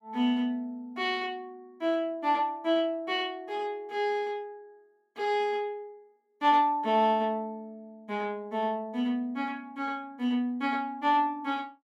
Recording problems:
none

